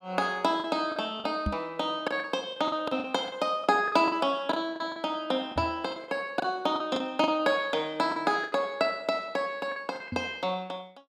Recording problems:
lost packets; 11% of the sound replaced, filled with the last packet
knock on the microphone; at 1.5 s, at 5.5 s and at 10 s; peak +2 dB vs average level

